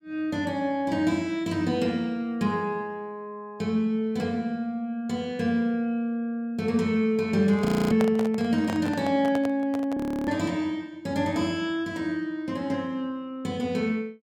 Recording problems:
microphone handling noise; from 7.5 to 10 s; peak 0 dB vs average level
audio freezing; at 7.5 s and at 10 s

